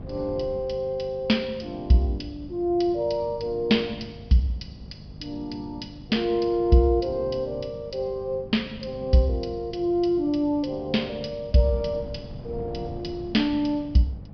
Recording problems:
treble missing; nothing above 5.5 kHz
electrical hum; 50 Hz, harmonics up to 750 Hz, SNR 21 dB
wind noise; below 220 Hz, SNR 18 dB

